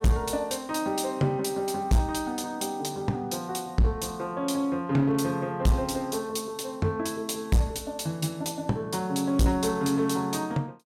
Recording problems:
distorted audio; hard clipping, uneven, signal-to-distortion ratio 10 dB

